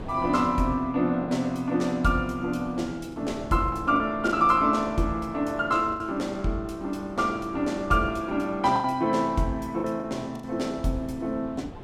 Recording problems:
wind noise; below 430 Hz, SNR 19 dB
lost packets; 4% of the sound replaced, filled with the last packet

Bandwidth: 16 kHz